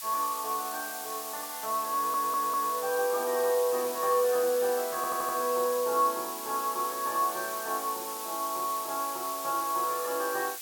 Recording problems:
hiss; slope +4 dB per octave, SNR 7 dB
audio stuttering; at 2 s and at 5 s

